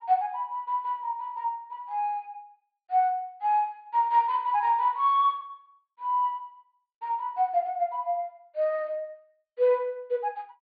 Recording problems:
low-pass filter; nothing above 4.8 kHz

